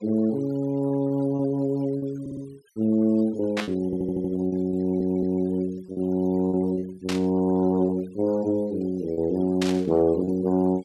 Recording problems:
denoising artefacts; signal-to-artefact ratio 26 dB
lost packets; 8% of the sound replaced, filled with repeated pitch periods
stutter; at 2 s, at 4 s and at 5 s
static burst; at 3.5 s, at 7 s and at 9.5 s; peak 0 dB vs average level

